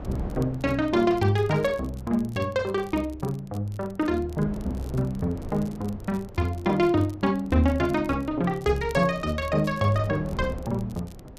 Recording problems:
wind noise; below 360 Hz, SNR 15 dB
crackling; vinyl, SNR 27 dB

